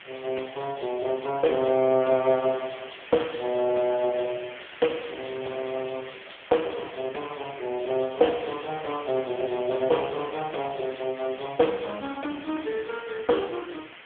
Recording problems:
phone line; 240 Hz to 3.3 kHz, AMR-NB
background hiss; SNR 15 dB

